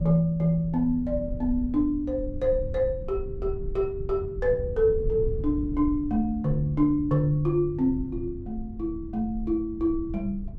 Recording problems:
rumble; below 94 Hz, SNR 10 dB

